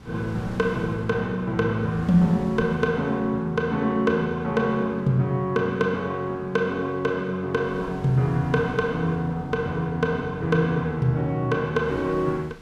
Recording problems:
wind noise; below 550 Hz, SNR 22 dB

